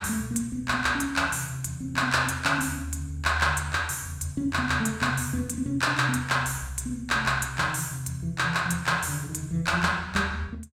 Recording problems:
none

